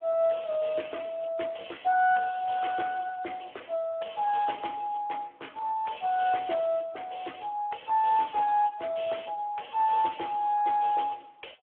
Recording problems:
telephone audio; 300 Hz to 3.3 kHz, Speex

